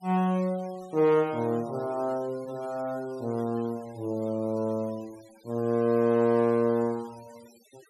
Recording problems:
noise reduction artefacts; signal-to-artefact ratio 25 dB

